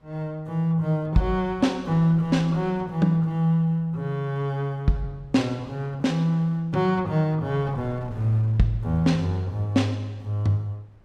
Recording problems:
wind noise; below 340 Hz, SNR 26 dB

